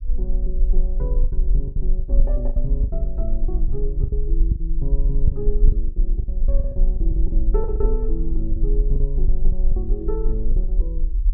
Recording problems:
low-frequency rumble; below 42 Hz, strongest tone 22 Hz, SNR -9 dB
lost packets; 14% of the sound replaced, filled with the last packet

